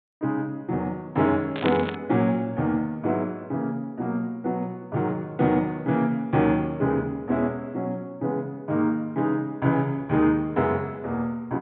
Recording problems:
treble missing; nothing above 4 kHz
static burst; at 1.5 s; peak 0 dB vs average level

